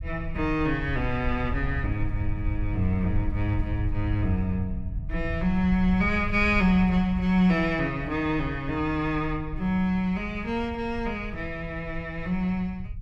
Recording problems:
low-frequency rumble; below 82 Hz, SNR 8 dB

